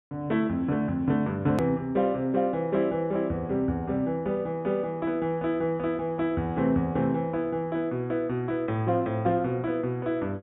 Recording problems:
treble cut off; nothing above 4 kHz
hard cut with a click; at 1.5 s

